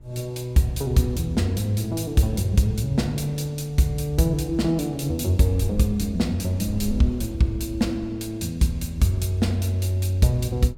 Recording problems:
wind on the microphone; below 88 Hz, SNR 18 dB

